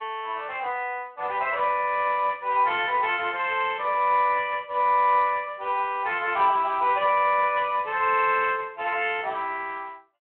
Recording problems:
telephone audio; 340 Hz to 3.3 kHz, Speex

